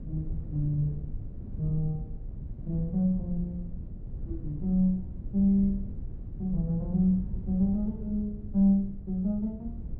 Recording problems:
low-frequency rumble; below 110 Hz, SNR 11 dB

